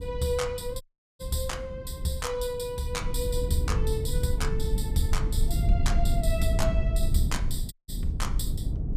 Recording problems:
rumble; below 82 Hz, SNR -2 dB
dropout; at 1 s and at 7.5 s

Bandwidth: 15 kHz